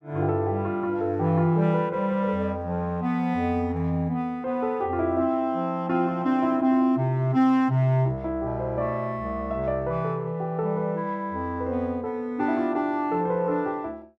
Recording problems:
none

